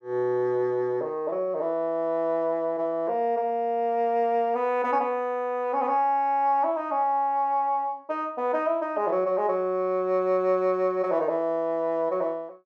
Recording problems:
none

